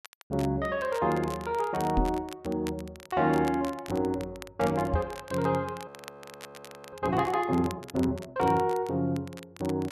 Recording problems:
crackling; vinyl, SNR 18 dB
knock on the microphone; at 2 s and at 5 s; peak +5 dB vs average level
frozen audio; at 6 s for 1 s

